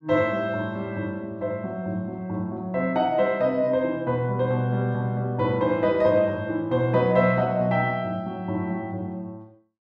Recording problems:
none

